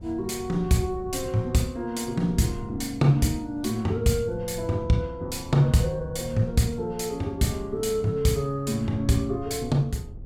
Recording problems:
wind on the microphone; below 140 Hz, SNR 16 dB

